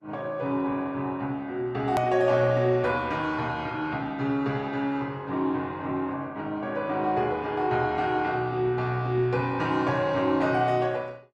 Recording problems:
lossy codec; Opus, log-spectral distance 2 dB, nothing above 13.7 kHz
hard cut with a click; at 2 s

